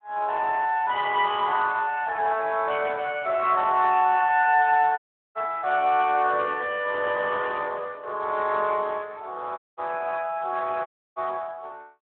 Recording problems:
telephone audio; 320 Hz to 3.5 kHz, Speex
audio cutting out; at 5 s, at 9.5 s and at 11 s

